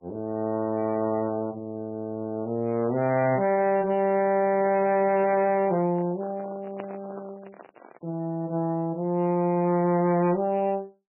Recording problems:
lossy codec; MP3, log-spectral distance 2 dB
distorted audio; hard clipping, uneven, signal-to-distortion ratio 11 dB
microphone handling noise; from 4.5 to 8 s; peak -9 dB vs average level

